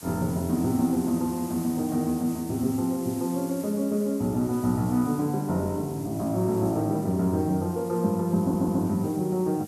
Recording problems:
background hiss; slope +1 dB per octave, SNR 18 dB
audio stuttering; at 8.5 s

